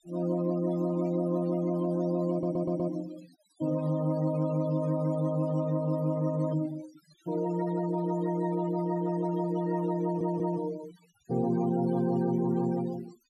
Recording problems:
noise reduction artefacts; signal-to-artefact ratio 18 dB
audio stuttering; at 2.5 s and at 10 s

